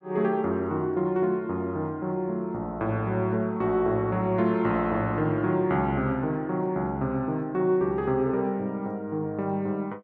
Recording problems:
none

